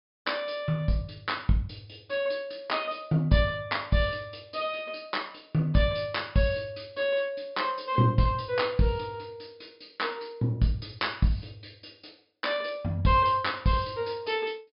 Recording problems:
low-pass filter; nothing above 5.5 kHz

